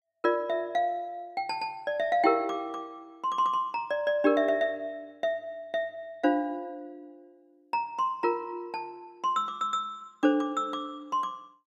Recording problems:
none

